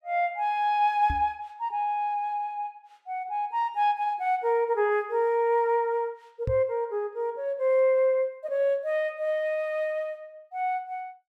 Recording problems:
knock on the microphone; at 1 s and at 6.5 s; peak -1 dB vs average level

